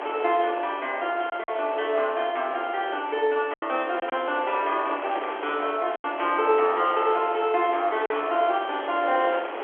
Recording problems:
phone line; 300 Hz to 3.4 kHz, G.711
wind noise; below 1.4 kHz, SNR 10 dB
lost packets; 3% of the sound replaced, filled with silence

